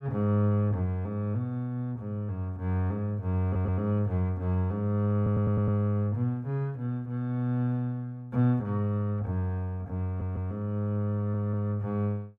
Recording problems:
audio stuttering; 4 times, first at 3.5 s

